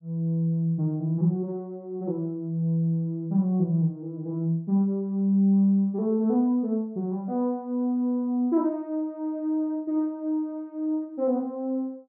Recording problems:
treble missing; nothing above 5.5 kHz

